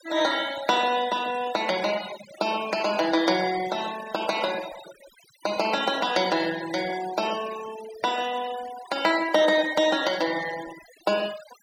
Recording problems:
denoising artefacts; signal-to-artefact ratio 14 dB

